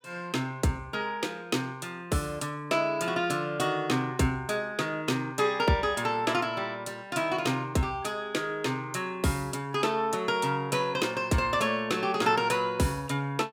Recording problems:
none

